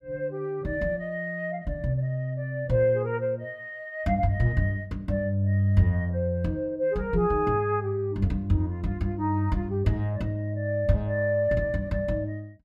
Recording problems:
none

